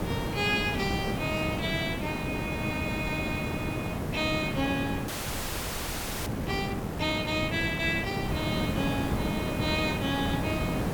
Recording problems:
background hiss; slope -8 dB per octave, SNR 1 dB
audio freezing; at 5 s for 1 s

